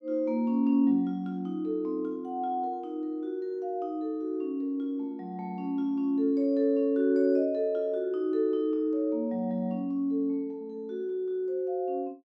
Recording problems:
none

